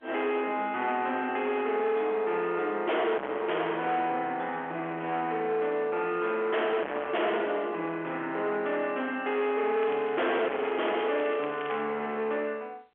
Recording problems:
phone line; 280 Hz to 3.3 kHz, G.711
distortion; soft clipping, signal-to-distortion ratio 8 dB
crackle; from 10 to 12 s; loose cable, SNR 16 dB

